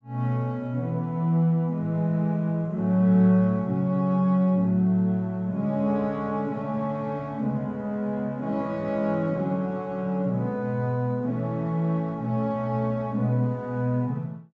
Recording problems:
treble cut off; nothing above 8 kHz

